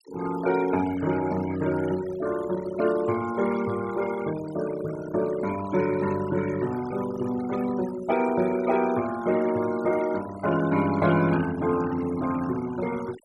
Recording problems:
denoising artefacts; signal-to-artefact ratio 15 dB

